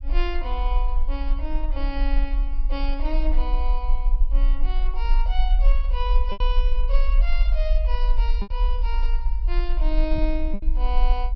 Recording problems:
treble missing; nothing above 5.7 kHz
low-frequency rumble; below 42 Hz, strongest tone 20 Hz, SNR -8 dB
packet loss; 2% of the sound replaced, filled with repeated pitch periods

